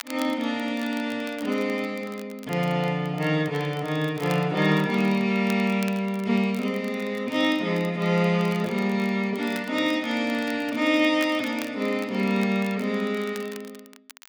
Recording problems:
crackling; vinyl, SNR 21 dB

